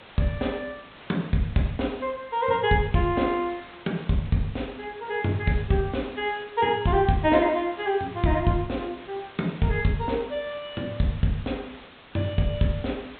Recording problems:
low-pass filter; nothing above 4 kHz
background hiss; SNR 20 dB

